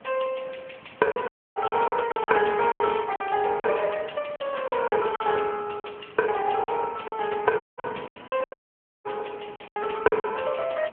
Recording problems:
telephone audio; 240 Hz to 3.3 kHz, AMR-NB
wind noise; below 1.5 kHz, SNR 21 dB
lost packets; 11% of the sound replaced, filled with silence
audio cutting out; at 1.5 s, at 7.5 s and at 8.5 s for 0.5 s

